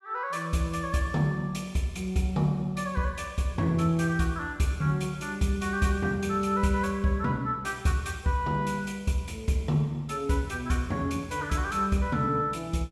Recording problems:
none

